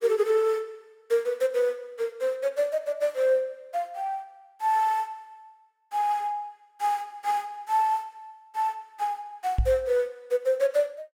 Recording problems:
microphone thump; at 9.5 s; peak +5 dB vs average level

